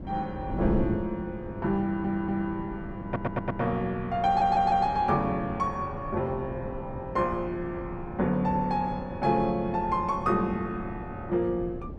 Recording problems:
wind noise; below 280 Hz, SNR 10 dB
audio stuttering; at 2 s, at 3 s and at 4.5 s

